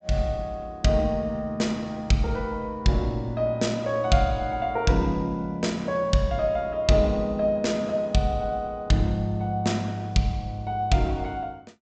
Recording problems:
treble cut off; nothing above 8 kHz

